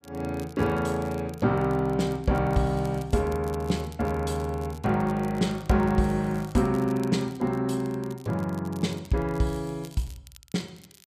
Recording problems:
crackle; vinyl, SNR 25 dB

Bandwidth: 14.5 kHz